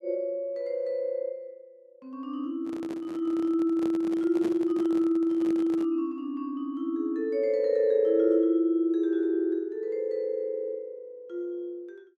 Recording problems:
microphone handling noise; from 2.5 to 6 s; peak -5 dB vs average level

